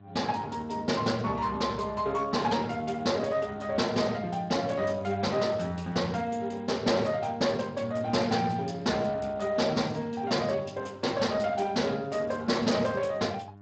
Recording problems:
lossy codec; Speex, log-spectral distance 5 dB, nothing above 7.3 kHz
distortion; hard clipping, uneven, signal-to-distortion ratio 11 dB
hum; 50 Hz, harmonics up to 1.4 kHz, SNR 20 dB

